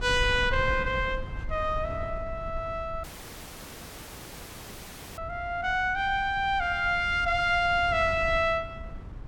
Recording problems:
wind noise; below 98 Hz, SNR 13 dB
dropout; at 3 s for 2 s

